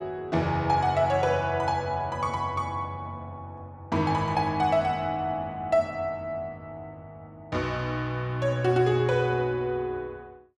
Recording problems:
none

